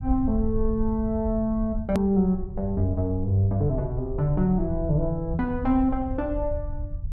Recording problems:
low-frequency rumble; below 78 Hz, SNR 8 dB
click at an edit; at 2 s

